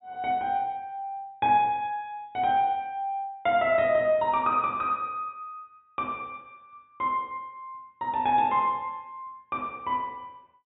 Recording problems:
treble missing; nothing above 4 kHz

